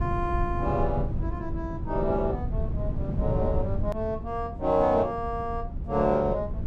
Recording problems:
rumble; below 140 Hz, SNR 4 dB
hard cut with a click; at 4 s

